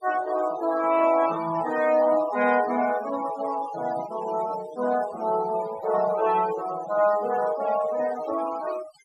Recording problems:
noise reduction artefacts; signal-to-artefact ratio 13 dB

